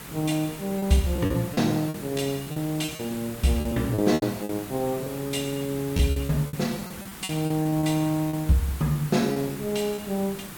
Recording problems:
background hiss; slope -3 dB per octave, SNR 12 dB
lost packets; 11% of the sound replaced, filled with repeated pitch periods

